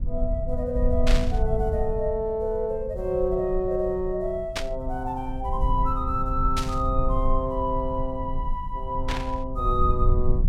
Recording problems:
rumble; below 62 Hz, SNR 3 dB
static burst; 4 times, first at 1 s; peak +3 dB vs average level

